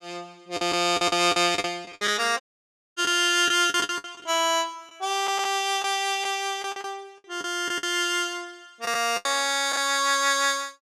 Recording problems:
packet loss; 11% of the sound replaced, filled with the last packet
audio cutting out; at 2.5 s for 0.5 s

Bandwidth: 15 kHz